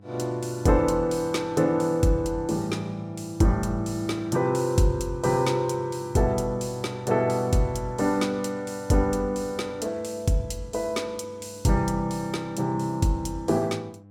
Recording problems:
hum; 50 Hz, harmonics up to 800 Hz, SNR 23 dB

